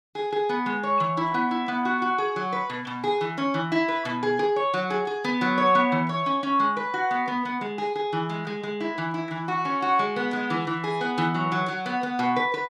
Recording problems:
none

